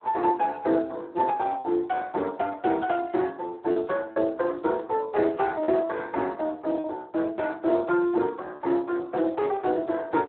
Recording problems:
telephone audio; 240 Hz to 2 kHz, Speex
packet loss; 2% of the sound replaced, filled with repeated pitch periods

